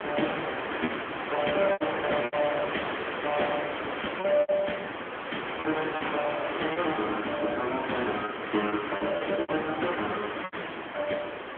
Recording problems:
phone line; 240 Hz to 3.4 kHz, AMR-NB
background hiss; SNR 3 dB
packet loss; 7% of the sound replaced, filled with repeated pitch periods

